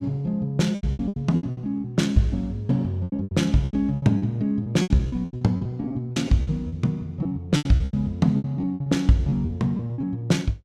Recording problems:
lost packets; 19% of the sound replaced, filled with repeated pitch periods

